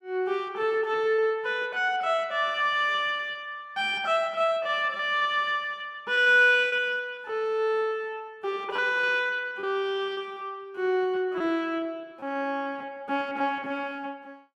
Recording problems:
lost packets; 17% of the sound replaced, filled with repeated pitch periods

